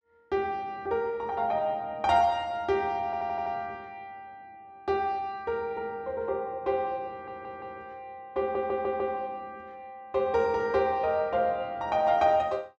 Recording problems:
stutter; at 3 s, at 7 s and at 8.5 s

